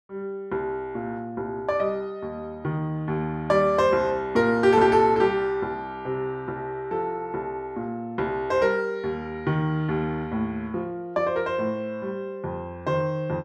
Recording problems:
none

